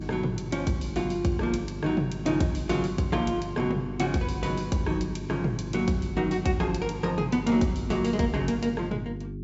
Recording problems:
treble missing; nothing above 8 kHz
hum; 50 Hz, harmonics up to 400 Hz, SNR 9 dB

